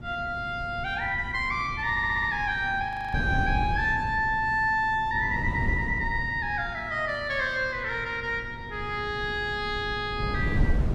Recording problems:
mains hum; 60 Hz, harmonics up to 960 Hz, SNR 19 dB
wind on the microphone; below 170 Hz, SNR 8 dB
audio stuttering; at 2 s
frozen audio; at 3 s

